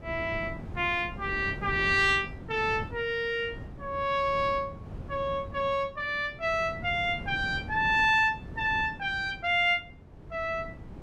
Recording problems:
wind noise; below 280 Hz, SNR 14 dB

